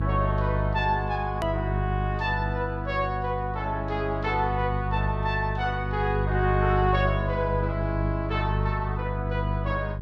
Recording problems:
hum; 50 Hz, harmonics up to 400 Hz, SNR 1 dB
edit click; at 1.5 s

